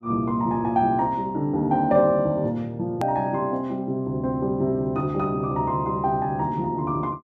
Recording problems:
edit click; at 3 s

